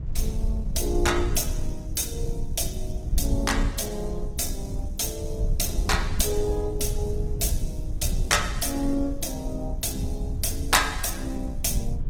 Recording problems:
codec artefacts; Opus, log-spectral distance 4 dB, nothing above 16.5 kHz
rumble; below 68 Hz, SNR 4 dB

